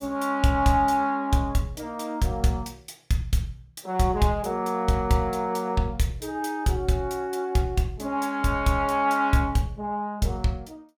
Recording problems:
none

